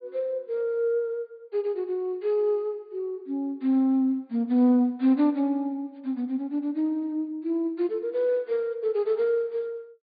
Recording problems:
low-pass filter; nothing above 4.7 kHz

